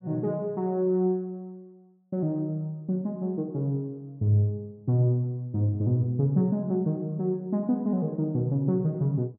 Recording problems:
none

